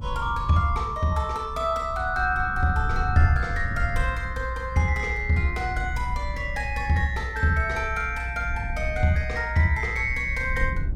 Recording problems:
rumble; below 74 Hz, SNR 7 dB

